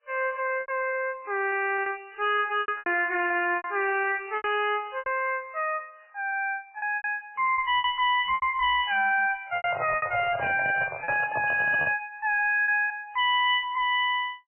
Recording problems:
lossy compression; MP3, then MP3, log-spectral distance 4 dB, nothing above 2.5 kHz
distortion; soft clipping, signal-to-distortion ratio 6 dB
packet loss; 9% of the sound replaced, filled with repeated pitch periods
handling noise; from 9.5 to 12 s; peak -1 dB vs average level

